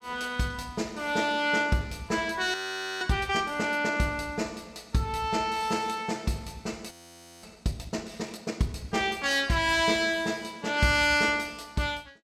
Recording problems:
audio freezing; at 2.5 s and at 7 s for 0.5 s

